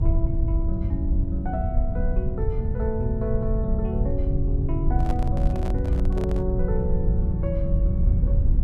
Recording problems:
hum; 50 Hz, harmonics up to 600 Hz, SNR 22 dB
rumble; below 84 Hz, SNR -4 dB
microphone handling noise; from 5 to 6.5 s; peak -3 dB vs average level

